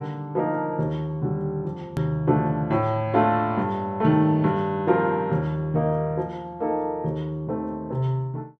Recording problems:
edit click; at 2 s

